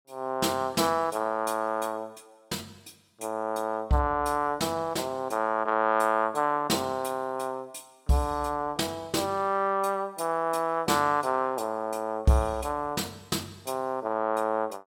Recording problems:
none

